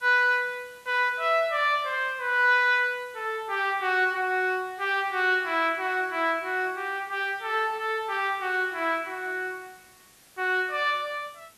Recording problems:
background hiss; slope -1 dB per octave, SNR 28 dB

